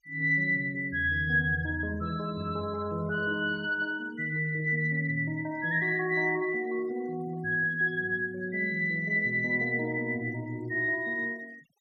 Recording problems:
denoising artefacts; signal-to-artefact ratio 26 dB

